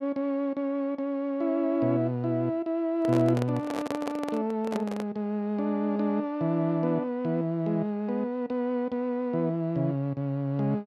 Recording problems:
handling noise; from 3 to 5 s; peak -1 dB vs average level

